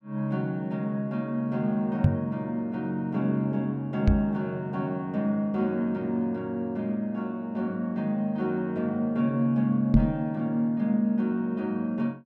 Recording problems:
microphone thump; at 2 s, at 4 s and at 10 s; peak +9 dB vs average level

